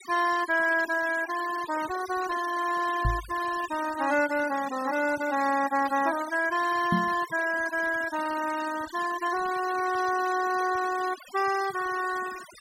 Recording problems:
noise reduction artefacts; signal-to-artefact ratio 14 dB
microphone bump; at 3 s and at 7 s; peak +3 dB vs average level

